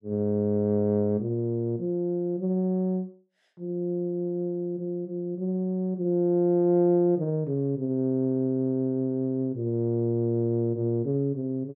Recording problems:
none

